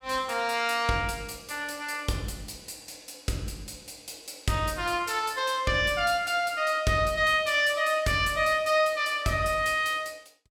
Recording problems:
none

